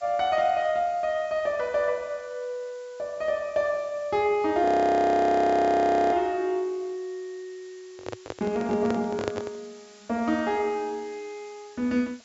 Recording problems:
low-pass filter; nothing above 8 kHz
hiss; slope +2 dB per octave, SNR 27 dB
frozen audio; at 4.5 s for 1.5 s
handling noise; from 8 to 9.5 s; peak 0 dB vs average level

